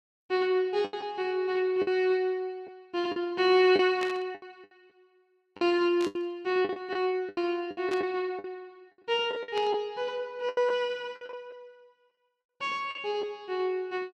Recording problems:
packet loss; 9% of the sound replaced, filled with the last packet
burst of static; 4 times, first at 4 s; peak -6 dB vs average level

